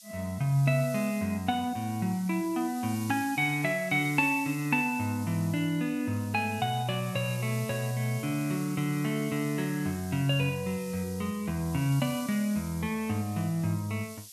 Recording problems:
background hiss; SNR 16 dB

